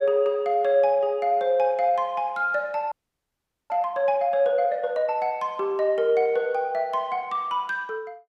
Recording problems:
audio freezing; at 3 s for 1 s

